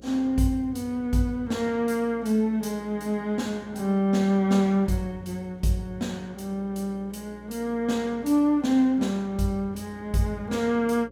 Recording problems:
hum; 60 Hz, harmonics up to 540 Hz, SNR 24 dB

